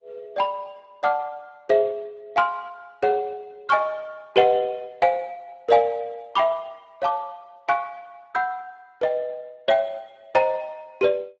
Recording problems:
lossy compression; Speex, then Opus, log-spectral distance 3 dB, nothing above 7.8 kHz

